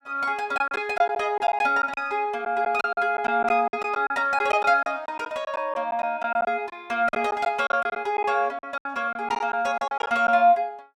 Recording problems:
packet loss; 10% of the sound replaced, filled with silence

